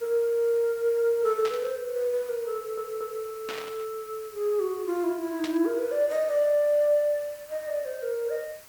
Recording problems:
hiss; SNR 20 dB
static burst; at 1.5 s, at 3.5 s and at 5.5 s; peak -5 dB vs average level
audio stuttering; at 2.5 s

